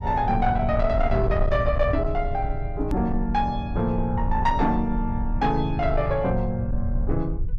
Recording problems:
distorted audio; soft clipping, signal-to-distortion ratio 12 dB
rumble; below 78 Hz, SNR 5 dB
edit click; at 3 s

